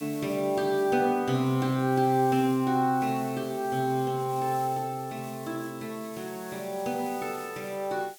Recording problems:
hiss; slope +3 dB per octave, SNR 19 dB

